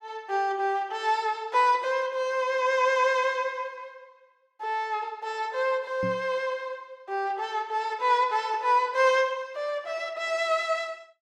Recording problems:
microphone thump; at 6 s; peak -4 dB vs average level

